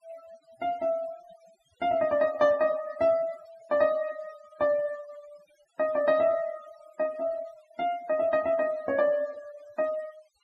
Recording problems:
denoising artefacts; signal-to-artefact ratio 22 dB

